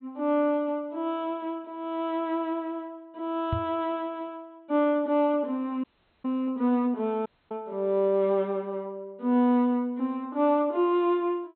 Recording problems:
treble missing; nothing above 4.1 kHz
microphone thump; at 3.5 s; peak +1 dB vs average level
audio cutting out; at 6 s and at 7.5 s

